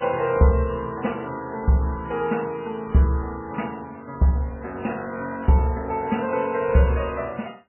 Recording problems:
lossy codec; MP3, log-spectral distance 4 dB, nothing above 2.7 kHz

